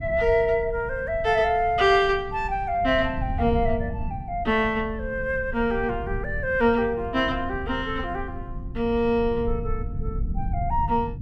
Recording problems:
rumble; below 100 Hz, SNR 10 dB

